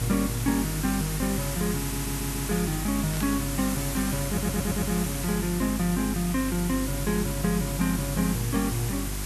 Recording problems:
hum; 50 Hz, harmonics up to 400 Hz, SNR 7 dB
hiss; slope 0 dB per octave, SNR 5 dB
stutter; at 2 s and at 4.5 s
static burst; at 3 s; peak -7 dB vs average level

